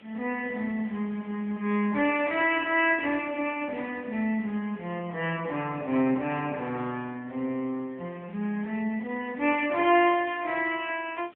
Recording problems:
phone line; 170 Hz to 3.4 kHz, AMR-NB
background hiss; SNR 28 dB

